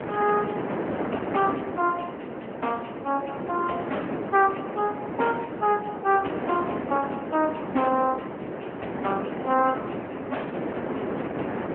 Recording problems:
phone line; 220 Hz to 3.1 kHz, AMR-NB
wind on the microphone; below 750 Hz, SNR 5 dB

